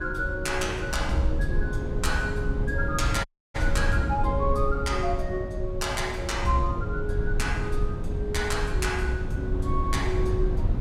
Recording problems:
rumble; below 96 Hz, SNR 1 dB
audio cutting out; at 3.5 s

